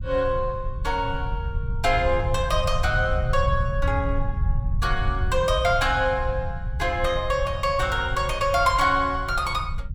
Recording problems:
low-frequency rumble; below 98 Hz, SNR 5 dB

